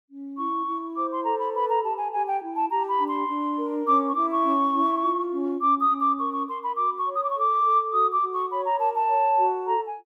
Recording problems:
none

